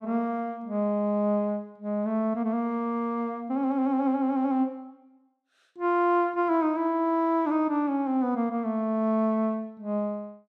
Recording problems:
none

